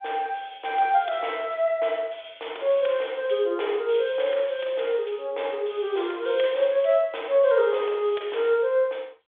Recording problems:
phone line; 320 Hz to 3.6 kHz, G.726

